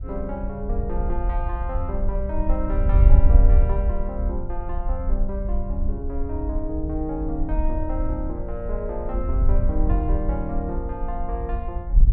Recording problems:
wind on the microphone; below 60 Hz, SNR -5 dB

